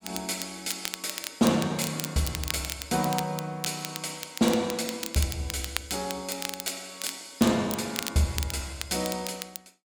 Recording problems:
crackling; vinyl, SNR 7 dB

